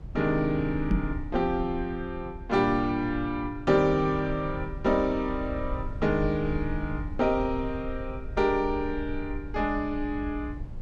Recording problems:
rumble; below 80 Hz, SNR 11 dB
microphone thump; at 1 s; peak +6 dB vs average level

